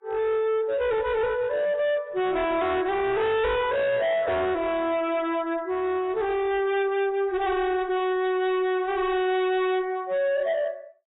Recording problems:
lossy compression; AAC, log-spectral distance 2 dB, nothing above 3.5 kHz
distortion; hard clipping, signal-to-distortion ratio 6 dB

